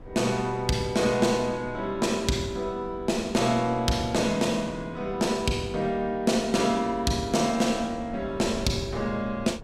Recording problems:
wind on the microphone; below 270 Hz, SNR 18 dB

